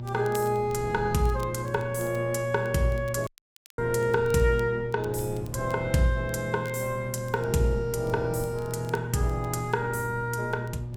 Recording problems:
electrical hum; 60 Hz, harmonics up to 600 Hz, SNR 8 dB
wind noise; below 210 Hz, SNR 16 dB
crackle; vinyl, SNR 25 dB
dropout; at 3.5 s for 0.5 s

